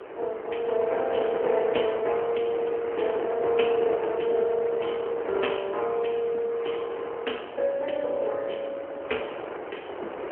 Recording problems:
phone line; 320 Hz to 3.1 kHz, AMR-NB
wind noise; below 880 Hz, SNR 9 dB

